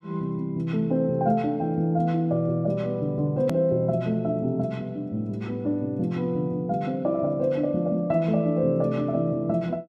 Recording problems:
click at an edit; at 3.5 s

